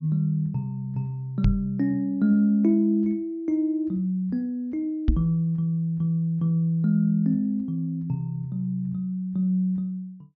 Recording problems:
low-pass filter; nothing above 6.6 kHz
microphone bump; at 1.5 s and at 5 s; peak +7 dB vs average level

